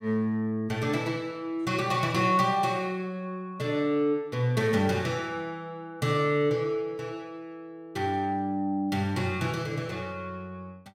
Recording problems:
none

